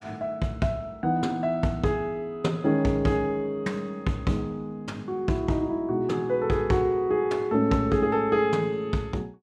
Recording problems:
none

